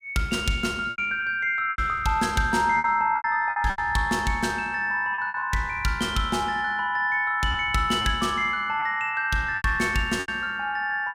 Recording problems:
packet loss; 7% of the sound replaced, filled with repeated pitch periods

